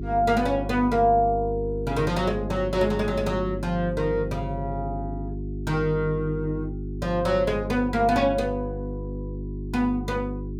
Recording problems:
hum; 50 Hz, harmonics up to 400 Hz, SNR 7 dB

